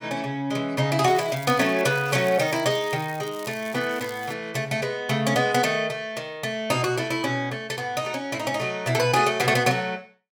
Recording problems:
crackling; from 1 to 4.5 s; loose cable, SNR 19 dB

